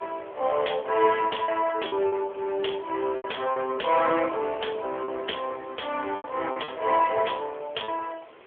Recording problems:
phone line; 340 Hz to 3.4 kHz, AMR-NB
hiss; SNR 24 dB
lost packets; 6% of the sound replaced, filled with repeated pitch periods

